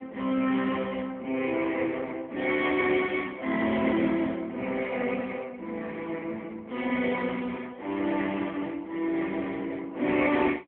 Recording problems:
telephone audio; 220 Hz to 3.3 kHz, AMR-NB

